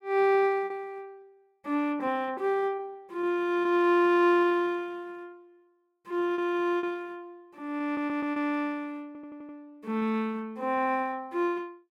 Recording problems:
lost packets; 7% of the sound replaced, filled with repeated pitch periods
audio stuttering; at 8 s and at 9 s

